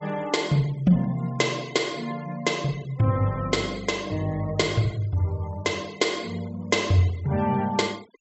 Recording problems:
treble missing; nothing above 7.8 kHz
noise reduction artefacts; signal-to-artefact ratio 22 dB

